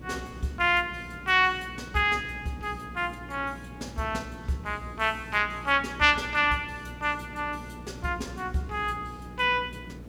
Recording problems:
hum; 60 Hz, harmonics up to 480 Hz, SNR 18 dB
background hiss; slope -8 dB per octave, SNR 20 dB

